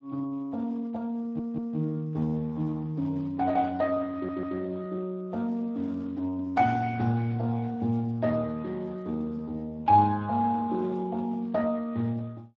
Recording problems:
lossy compression; Speex, log-spectral distance 2 dB
stutter; at 1 s and at 4 s

